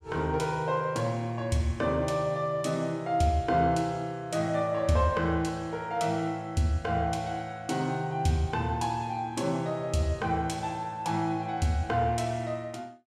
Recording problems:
none

